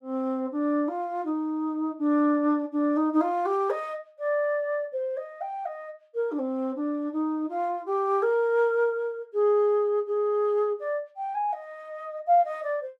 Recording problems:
none

